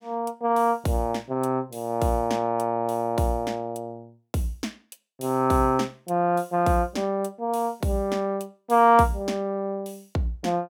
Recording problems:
none

